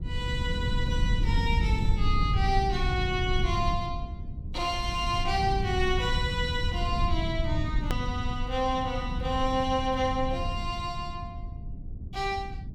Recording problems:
rumble; below 110 Hz, SNR 2 dB
edit click; at 8 s

